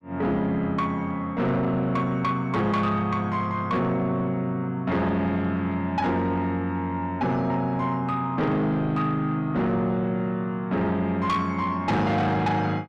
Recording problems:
distortion; soft clipping, signal-to-distortion ratio 10 dB

